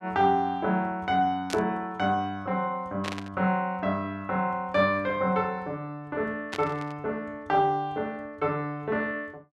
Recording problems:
static burst; at 1.5 s, at 3 s and at 6.5 s; peak -1 dB vs average level

